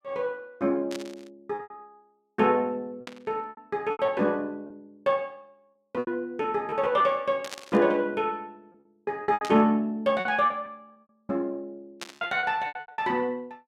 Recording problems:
packet loss; 11% of the sound replaced, filled with repeated pitch periods
static burst; 5 times, first at 1 s; peak -4 dB vs average level

